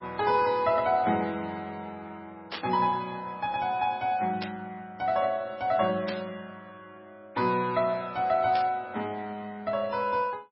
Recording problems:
codec artefacts; MP3, log-spectral distance 2 dB, nothing above 4.6 kHz
static burst; 4 times, first at 2.5 s; peak -2 dB vs average level

